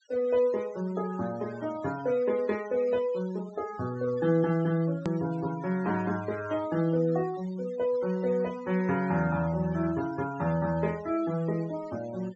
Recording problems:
low-pass filter; nothing above 8 kHz
noise reduction artefacts; signal-to-artefact ratio 19 dB
click at an edit; at 5 s

